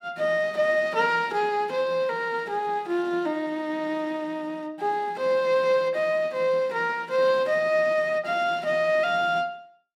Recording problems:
none

